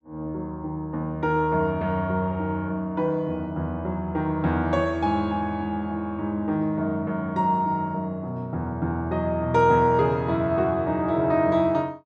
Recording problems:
none

